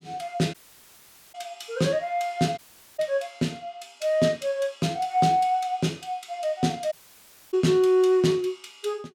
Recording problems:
dropout; at 0.5 s for 1 s, at 2.5 s and at 7 s for 0.5 s

